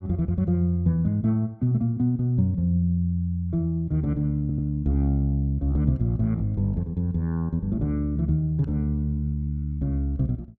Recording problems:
stutter; at 4.5 s

